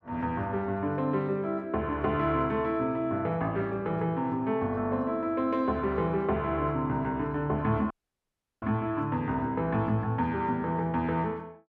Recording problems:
dropout; at 8 s for 0.5 s

